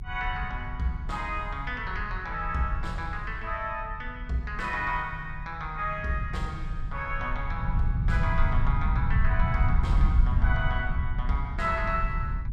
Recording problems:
rumble; below 88 Hz, SNR -1 dB

